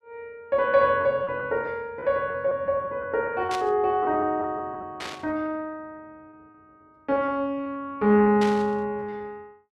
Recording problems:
packet loss; 7% of the sound replaced, filled with repeated pitch periods
burst of static; at 3.5 s, at 5 s and at 8.5 s; peak -5 dB vs average level

